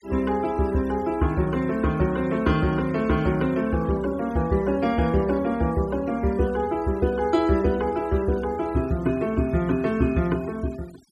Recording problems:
noise reduction artefacts; signal-to-artefact ratio 22 dB

